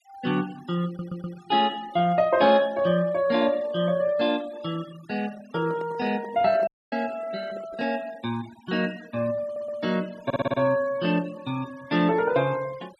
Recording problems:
noise reduction artefacts; signal-to-artefact ratio 22 dB
stutter; at 1 s, at 9.5 s and at 10 s
handling noise; from 5.5 to 8 s; peak -11 dB vs average level
dropout; at 6.5 s

